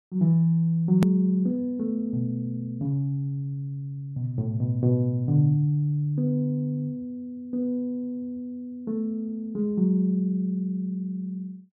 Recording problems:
hard cut with a click; at 1 s

